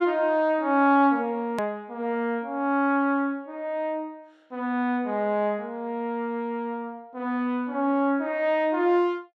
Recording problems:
click at an edit; at 1.5 s

